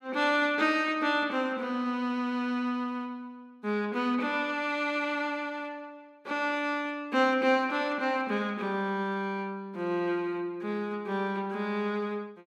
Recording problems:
none

